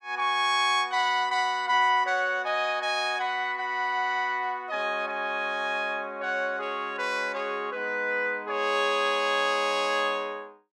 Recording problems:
none

